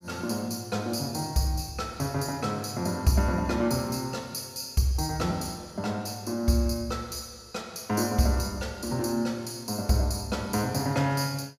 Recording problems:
none

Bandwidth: 15 kHz